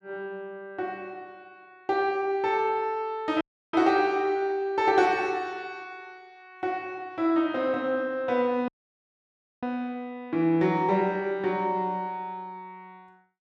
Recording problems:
dropout; at 3.5 s and at 8.5 s for 1 s

